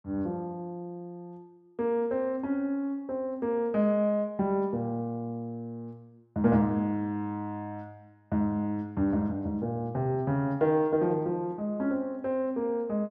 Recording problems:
none

